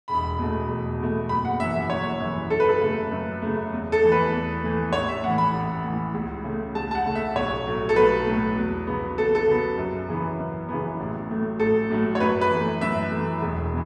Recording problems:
none

